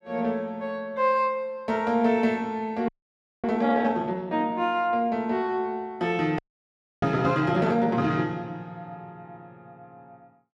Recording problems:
frozen audio; at 3 s for 0.5 s and at 6.5 s for 0.5 s

